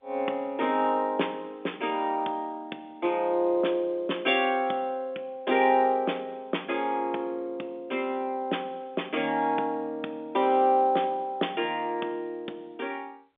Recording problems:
phone line; 220 Hz to 3.6 kHz, G.711

